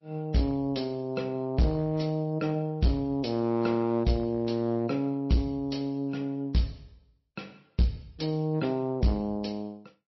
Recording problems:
lossy compression; MP3, log-spectral distance 2 dB, nothing above 5.7 kHz
distortion; hard clipping, uneven, signal-to-distortion ratio 11 dB

